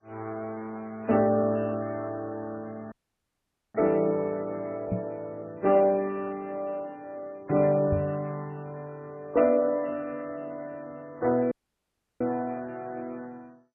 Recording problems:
lossy codec; MP3, then MP2, log-spectral distance 2 dB, nothing above 2.7 kHz
audio cutting out; at 3 s for 1 s and at 12 s for 0.5 s
microphone bump; at 5 s and at 8 s; peak +2 dB vs average level

